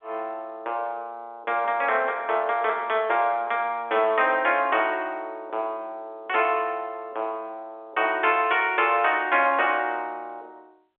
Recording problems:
telephone audio; 300 Hz to 3.6 kHz, G.711

